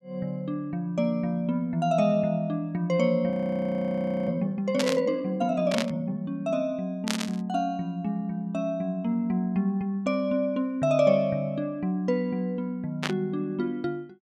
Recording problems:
audio freezing; at 3.5 s for 1 s
static burst; 4 times, first at 5 s; peak +3 dB vs average level

